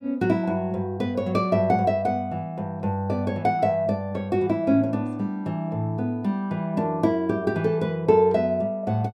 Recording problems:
none

